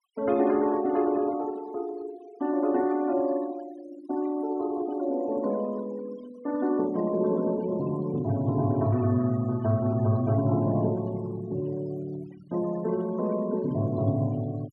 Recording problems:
denoising artefacts; signal-to-artefact ratio 22 dB

